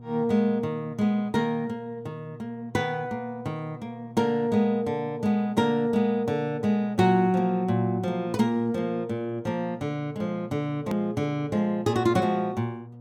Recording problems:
hum; 60 Hz, harmonics up to 720 Hz, SNR 19 dB
edit click; at 11 s

